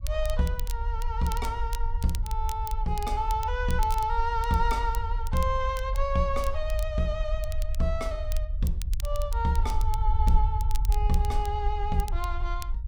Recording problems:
low-frequency rumble; below 58 Hz, SNR 1 dB
crackle; vinyl, SNR 15 dB

